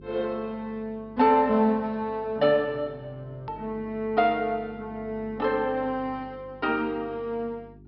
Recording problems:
low-pass filter; nothing above 5.4 kHz
hum; 50 Hz, harmonics up to 400 Hz, SNR 22 dB
edit click; at 3.5 s

